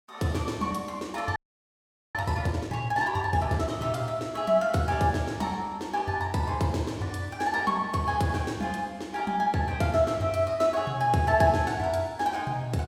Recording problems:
frozen audio; at 1.5 s for 1 s

